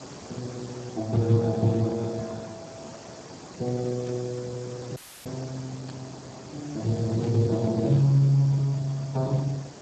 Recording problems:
codec artefacts; Speex, log-spectral distance 12 dB
hiss; SNR 16 dB
burst of static; at 4 s, at 6 s and at 7 s; peak -16 dB vs average level
dropout; at 5 s

